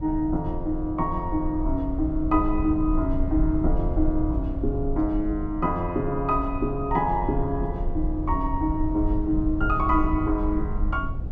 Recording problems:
low-frequency rumble; below 70 Hz, SNR 5 dB

